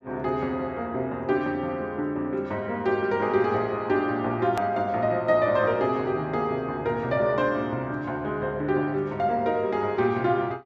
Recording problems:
edit click; at 4.5 s

